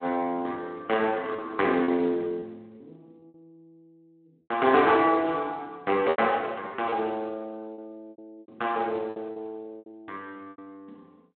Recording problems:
phone line; 240 Hz to 3.6 kHz, Speex
lost packets; 8% of the sound replaced, filled with repeated pitch periods

